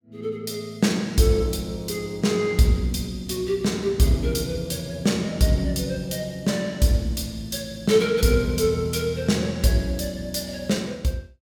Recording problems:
none

